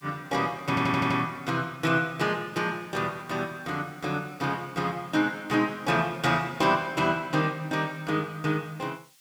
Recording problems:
hiss; SNR 29 dB
stutter; at 0.5 s

